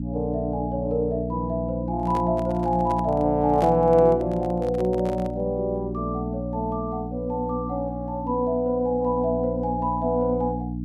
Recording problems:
hum; 60 Hz, harmonics up to 300 Hz, SNR 6 dB
microphone handling noise; from 2 to 5.5 s; peak -3 dB vs average level

